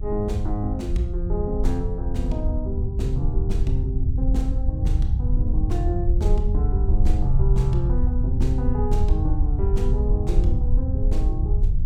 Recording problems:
hum; 60 Hz, harmonics up to 720 Hz, SNR 22 dB
rumble; below 74 Hz, SNR -5 dB

